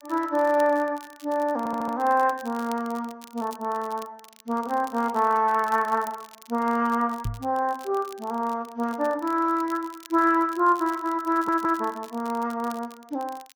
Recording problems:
codec artefacts; MP2, log-spectral distance 2 dB
crackling; vinyl, SNR 23 dB
stutter; at 1.5 s and at 11 s
microphone thump; at 7.5 s; peak -1 dB vs average level

